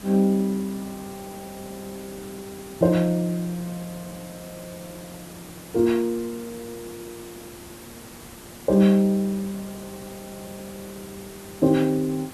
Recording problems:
background hiss; slope -4 dB per octave, SNR 19 dB

